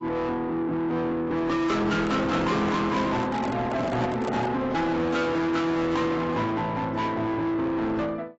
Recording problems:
lossy compression; AAC, log-spectral distance 2 dB, nothing above 7.6 kHz
distorted audio; soft clipping, signal-to-distortion ratio 6 dB
handling noise; from 2 to 4.5 s; peak +2 dB vs average level

